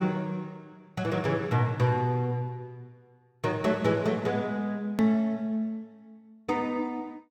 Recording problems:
hard cut with a click; at 5 s

